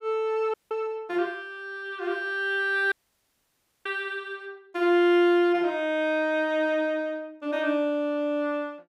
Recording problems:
audio cutting out; at 0.5 s and at 3 s for 1 s

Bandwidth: 15.5 kHz